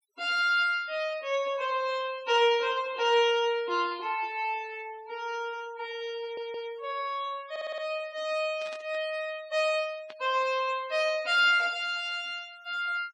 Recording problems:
denoising artefacts; signal-to-artefact ratio 23 dB
audio stuttering; at 6 s and at 7.5 s
static burst; at 8.5 s and at 10 s; peak -13 dB vs average level

